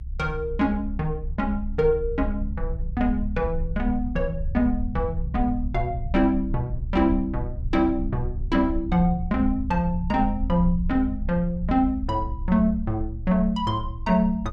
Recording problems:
rumble; below 66 Hz, strongest tone 28 Hz, SNR 7 dB

